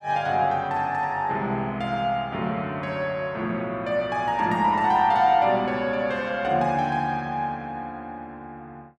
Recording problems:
none

